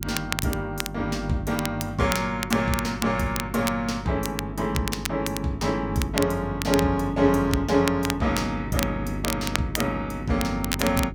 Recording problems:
hum; 50 Hz, harmonics up to 400 Hz, SNR 10 dB
crackle; vinyl, SNR 7 dB

